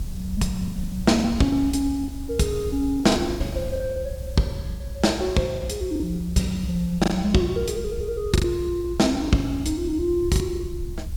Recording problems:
background hiss; SNR 23 dB
low-frequency rumble; below 82 Hz, SNR 11 dB
packet loss; 11% of the sound replaced, filled with the last packet

